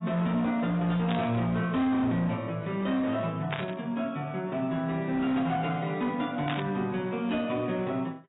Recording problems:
lossy codec; AAC, log-spectral distance 2 dB, nothing above 3.8 kHz
distortion; hard clipping, signal-to-distortion ratio 12 dB
static burst; at 1 s, at 3.5 s and at 6.5 s; peak 0 dB vs average level

